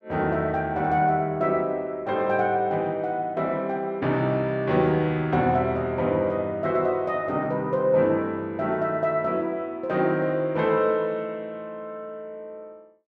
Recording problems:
none

